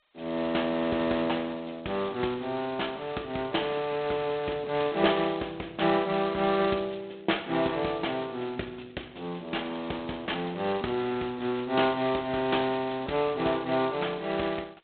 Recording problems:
telephone audio; 280 Hz to 3.9 kHz, G.726

